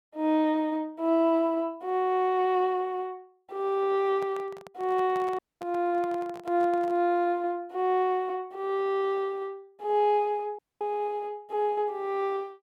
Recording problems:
handling noise; from 4 to 7 s; peak -11 dB vs average level
audio cutting out; at 5.5 s and at 11 s

